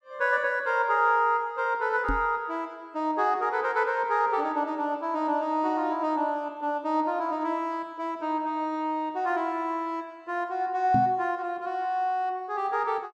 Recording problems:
microphone thump; at 2 s and at 11 s; peak +2 dB vs average level

